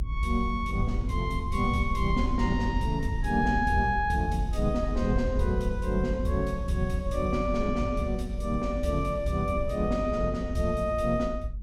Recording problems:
rumble; below 66 Hz, SNR 5 dB

